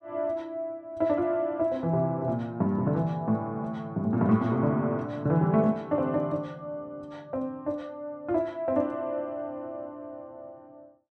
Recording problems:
none

